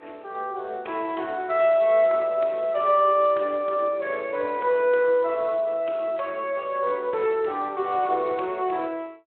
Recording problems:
phone line; 280 Hz to 3.3 kHz, Speex

